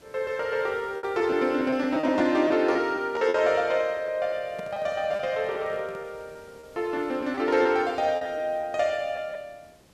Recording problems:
background hiss; slope -4 dB per octave, SNR 28 dB
packet loss; 7% of the sound replaced, filled with repeated pitch periods
microphone handling noise; from 4.5 to 6 s; peak -11 dB vs average level

